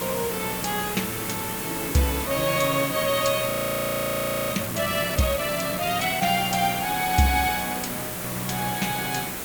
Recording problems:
hiss; slope -4 dB per octave, SNR 4 dB
frozen audio; at 3.5 s for 1 s

